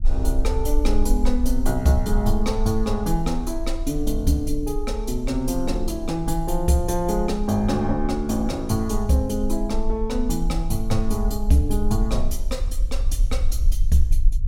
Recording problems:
rumble; below 42 Hz, strongest tone 20 Hz, SNR 4 dB

